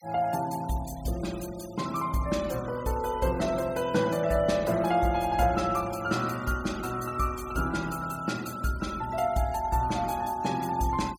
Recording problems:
noise reduction artefacts; signal-to-artefact ratio 18 dB

